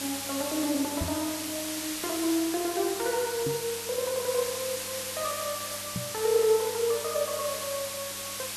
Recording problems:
electrical hum; 50 Hz, harmonics up to 800 Hz, SNR 22 dB
hiss; slope +1 dB per octave, SNR 3 dB
knock on the microphone; at 1 s, at 3.5 s and at 6 s; peak +1 dB vs average level
crackle; from 6.5 to 7.5 s; loose cable, SNR 23 dB

